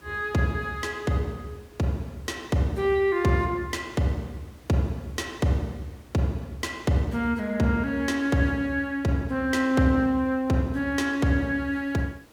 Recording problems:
hiss; slope -5 dB per octave, SNR 28 dB

